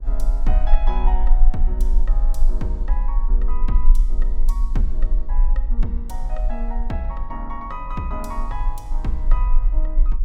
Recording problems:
hum; 60 Hz, harmonics up to 660 Hz, SNR 22 dB
rumble; below 38 Hz, strongest tone 24 Hz, SNR -9 dB

